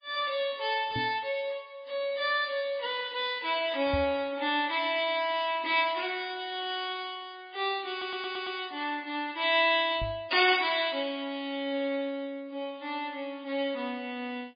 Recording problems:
lossy compression; MP3, log-spectral distance 3 dB, nothing above 4.8 kHz
knock on the microphone; at 1 s, at 4 s and at 10 s; peak -1 dB vs average level
stutter; at 8 s

